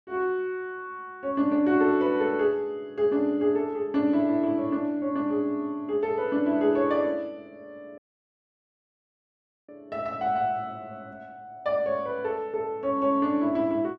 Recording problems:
dropout; at 8 s for 1.5 s

